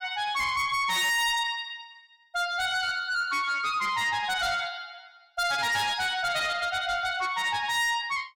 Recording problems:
distorted audio; soft clipping, signal-to-distortion ratio 7 dB

